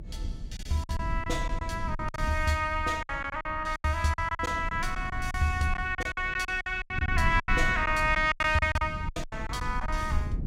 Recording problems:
low-frequency rumble; below 84 Hz, SNR 9 dB
packet loss; 15% of the sound replaced, filled with silence

